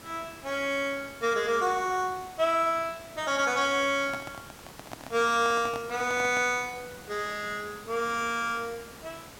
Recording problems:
hiss; slope -3 dB per octave, SNR 18 dB
handling noise; from 4 to 6.5 s; peak -6 dB vs average level

